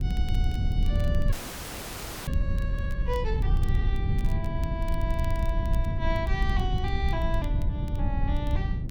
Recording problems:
rumble; below 92 Hz, SNR -7 dB
crackling; vinyl, SNR 19 dB
audio freezing; at 1.5 s for 1 s

